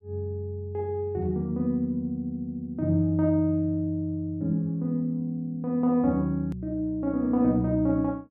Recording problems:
edit click; at 6.5 s

